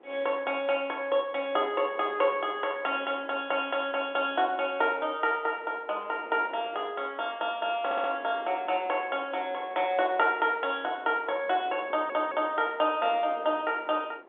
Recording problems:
telephone audio; 280 Hz to 3.6 kHz, G.711
wind on the microphone; below 800 Hz, SNR 20 dB
audio stuttering; at 8 s and at 12 s

